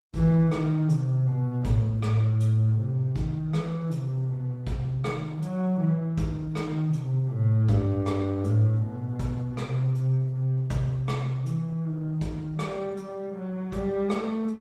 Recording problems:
lossy compression; Opus, log-spectral distance 2 dB

